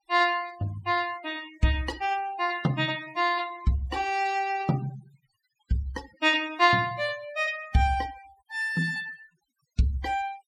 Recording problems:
denoising artefacts; signal-to-artefact ratio 20 dB

